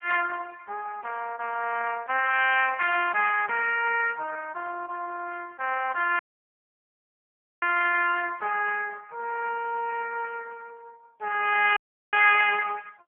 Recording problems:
telephone audio; 280 Hz to 3.1 kHz, AMR-NB
dropout; at 6 s for 1.5 s and at 12 s

